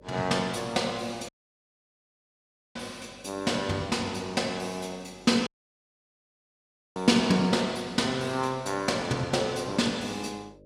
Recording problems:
hum; 50 Hz, harmonics up to 600 Hz, SNR 26 dB
audio cutting out; at 1.5 s for 1.5 s and at 5.5 s for 1.5 s

